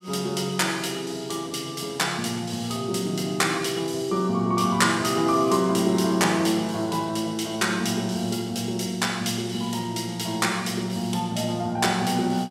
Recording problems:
none

